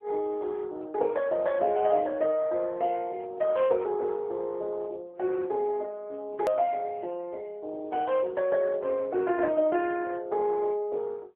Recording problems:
telephone audio; 280 Hz to 3.6 kHz, AMR-NB
click at an edit; at 6.5 s

